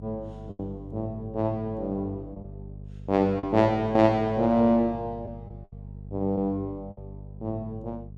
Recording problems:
hum; 50 Hz, harmonics up to 450 Hz, SNR 16 dB
lost packets; 4% of the sound replaced, filled with the last packet

